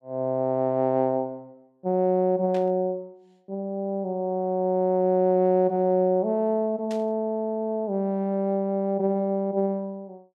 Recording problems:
static burst; at 2.5 s and at 7 s; peak -13 dB vs average level

